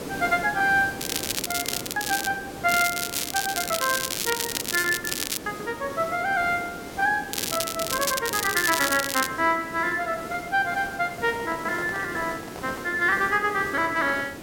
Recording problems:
background hiss; SNR 11 dB
packet loss; 6% of the sound replaced, filled with repeated pitch periods
crackle; from 1 to 2.5 s, from 2.5 to 5.5 s and from 7.5 to 9.5 s; loose cable, SNR 2 dB
microphone handling noise; from 11 to 13 s; peak -9 dB vs average level

